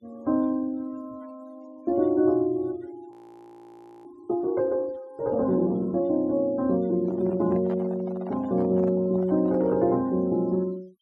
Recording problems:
denoising artefacts; signal-to-artefact ratio 28 dB
audio freezing; at 3 s for 1 s
handling noise; from 7 to 10 s; peak -11 dB vs average level

